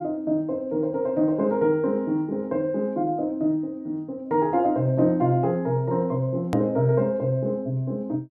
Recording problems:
click at an edit; at 6.5 s

